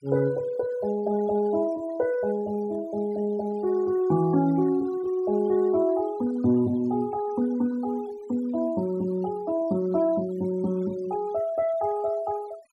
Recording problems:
noise reduction artefacts; signal-to-artefact ratio 23 dB

